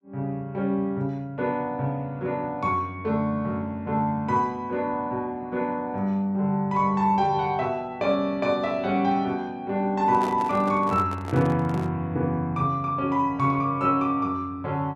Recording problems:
handling noise; from 10 to 12 s; peak -4 dB vs average level

